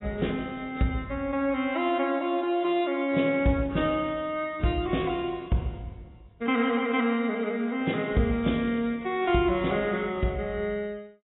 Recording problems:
lossy codec; AAC, log-spectral distance 3 dB, nothing above 3.7 kHz

